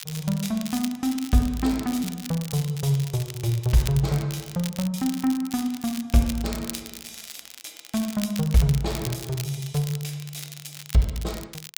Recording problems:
crackling; vinyl, SNR 13 dB

